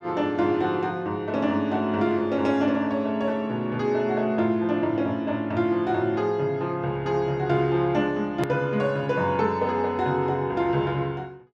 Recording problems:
click at an edit; at 8.5 s

